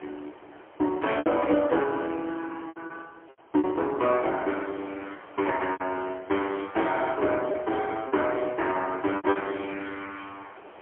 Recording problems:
phone line; 260 Hz to 3.3 kHz, AMR-NB, then MP3
wind noise; below 1.2 kHz, SNR 24 dB
lost packets; 7% of the sound replaced, filled with repeated pitch periods

